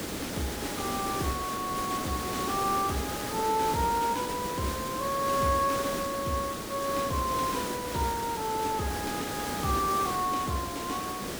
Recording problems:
background hiss; SNR 4 dB

